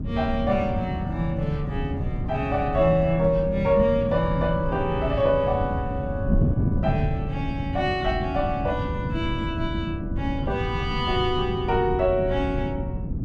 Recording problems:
wind on the microphone; below 190 Hz, SNR 4 dB

